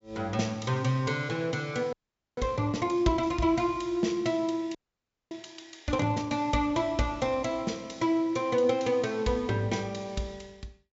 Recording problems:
treble cut off; nothing above 8 kHz
audio freezing; at 2 s and at 5 s for 0.5 s

